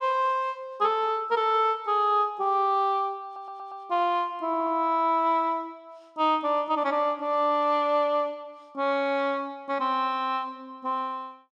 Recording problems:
stutter; at 3 s and at 4.5 s

